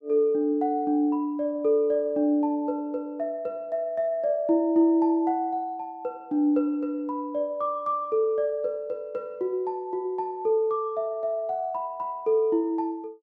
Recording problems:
none

